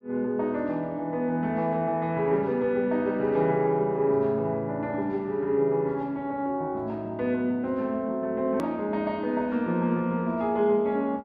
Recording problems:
hard cut with a click; at 8.5 s

